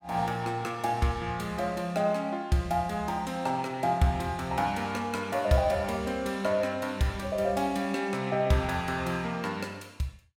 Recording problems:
none

